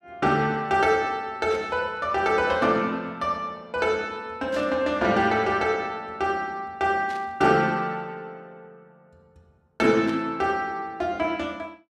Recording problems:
static burst; 4 times, first at 1.5 s; peak -12 dB vs average level

